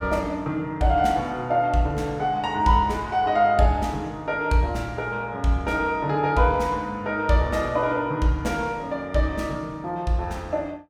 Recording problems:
none

